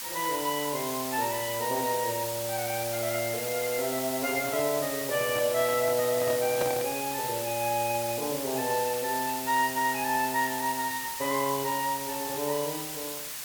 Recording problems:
background hiss; slope +2 dB per octave, SNR 4 dB
microphone handling noise; from 4.5 to 7 s; peak 0 dB vs average level

